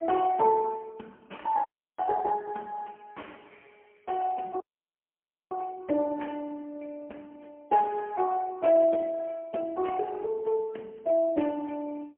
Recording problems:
telephone audio; 190 Hz to 3.2 kHz, AMR-NB, then MP3
dropout; at 1.5 s and at 4.5 s for 1 s

